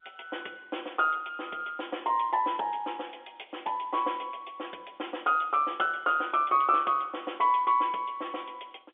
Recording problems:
telephone audio; 300 Hz to 3.6 kHz, G.711

